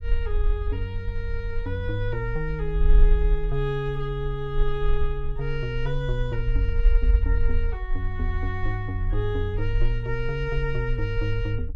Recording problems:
rumble; below 46 Hz, SNR 0 dB

